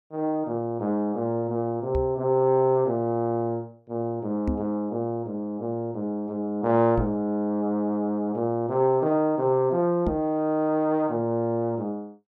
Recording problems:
knock on the microphone; 4 times, first at 2 s; peak +1 dB vs average level

